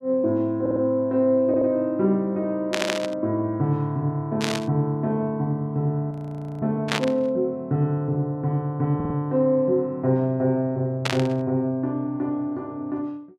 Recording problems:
audio stuttering; 4 times, first at 0.5 s
burst of static; 4 times, first at 2.5 s; peak +4 dB vs average level
frozen audio; at 6 s for 0.5 s

